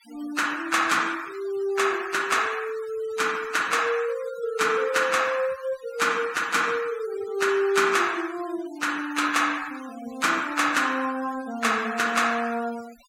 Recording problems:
noise reduction artefacts; signal-to-artefact ratio 18 dB

